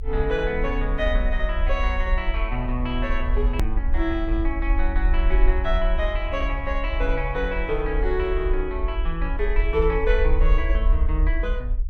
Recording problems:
rumble; below 50 Hz, strongest tone 36 Hz, SNR -1 dB
hard cut with a click; at 3.5 s

